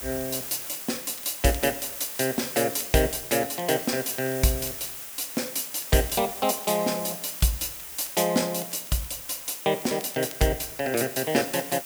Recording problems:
hiss; slope 0 dB per octave, SNR 8 dB
crackle; vinyl, SNR 25 dB

